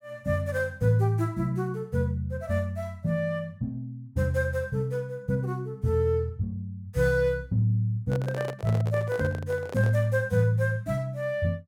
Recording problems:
handling noise; from 8 to 10 s; peak -3 dB vs average level

